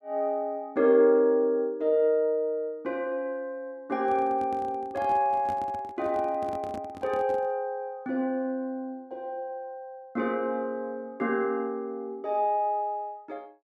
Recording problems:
handling noise; from 4 to 7.5 s; peak -8 dB vs average level

